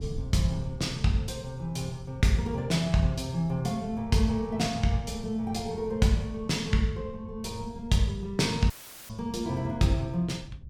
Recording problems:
wind on the microphone; below 120 Hz, SNR 16 dB
audio cutting out; at 8.5 s; filled with static

